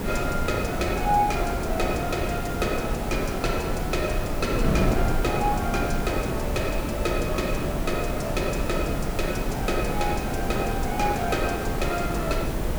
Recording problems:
hiss; slope -6 dB per octave, SNR 5 dB
wind noise; below 220 Hz, SNR 2 dB

